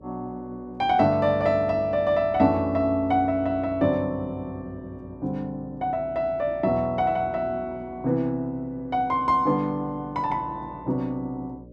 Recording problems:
hum; 60 Hz, harmonics up to 600 Hz, SNR 21 dB

